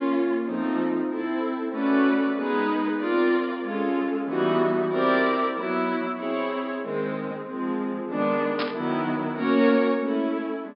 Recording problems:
low-pass filter; nothing above 5.5 kHz
static burst; at 8.5 s; peak -2 dB vs average level

